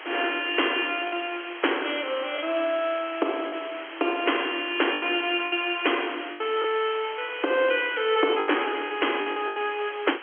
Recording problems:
telephone audio; 280 Hz to 3.3 kHz, G.711
background hiss; SNR 13 dB
lost packets; 7% of the sound replaced, filled with the last packet

